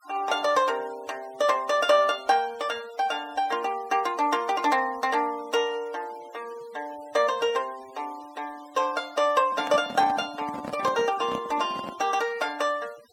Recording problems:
denoising artefacts; signal-to-artefact ratio 22 dB
microphone handling noise; from 9.5 to 12 s; peak -4 dB vs average level

